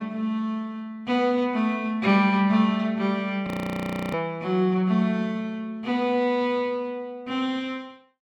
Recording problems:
audio freezing; at 3.5 s for 0.5 s

